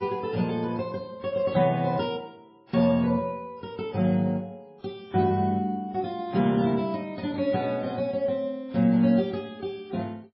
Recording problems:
lossy compression; MP3, then AAC, log-spectral distance 2 dB, nothing above 5 kHz

